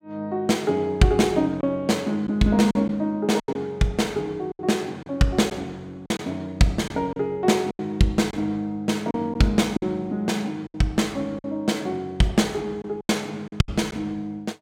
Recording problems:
packet loss; 6% of the sound replaced, filled with silence

